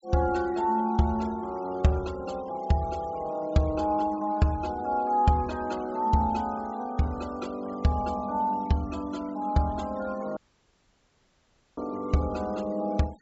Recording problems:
treble cut off; nothing above 7.6 kHz
noise reduction artefacts; signal-to-artefact ratio 24 dB
audio cutting out; at 10 s for 1.5 s

